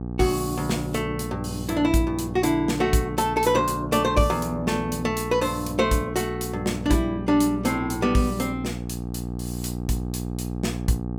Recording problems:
hum; 60 Hz, harmonics up to 840 Hz, SNR 8 dB

